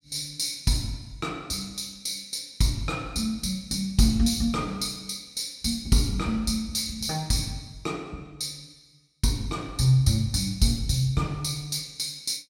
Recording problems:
none

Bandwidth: 16 kHz